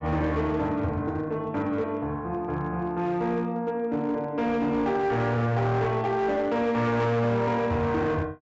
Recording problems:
low-pass filter; nothing above 7.5 kHz
distortion; hard clipping, uneven, signal-to-distortion ratio 11 dB

